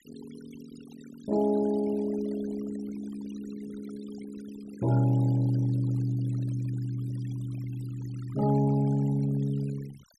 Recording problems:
denoising artefacts; signal-to-artefact ratio 20 dB

